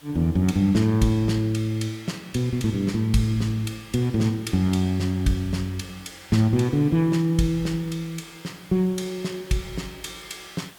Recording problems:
hiss; SNR 25 dB

